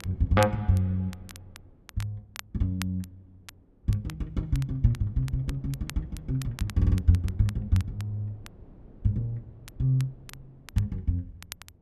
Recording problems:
wind noise; below 260 Hz, SNR 24 dB
crackle; vinyl, SNR 18 dB
stutter; at 7 s

